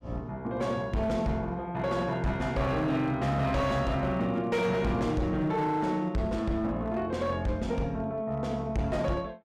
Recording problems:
distortion; hard clipping, signal-to-distortion ratio 11 dB

